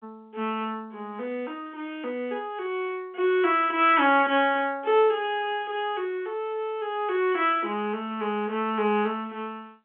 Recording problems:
telephone audio; 240 Hz to 3.6 kHz, G.711

